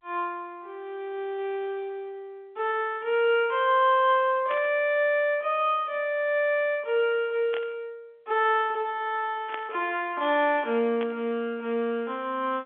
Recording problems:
telephone audio; 260 Hz to 3.5 kHz, G.711
static burst; 4 times, first at 4.5 s; peak -7 dB vs average level

